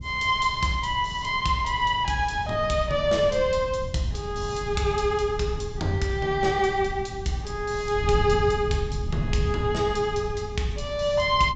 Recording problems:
treble cut off; nothing above 8 kHz
wind on the microphone; below 130 Hz, SNR 10 dB

